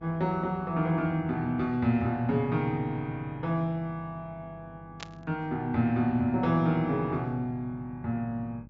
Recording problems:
low-pass filter; nothing above 8 kHz
hum; 50 Hz, harmonics up to 600 Hz, SNR 22 dB
static burst; at 5 s; peak -5 dB vs average level

